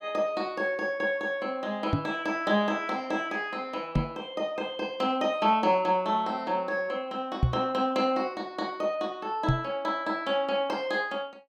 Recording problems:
knock on the microphone; 4 times, first at 2 s; peak +8 dB vs average level

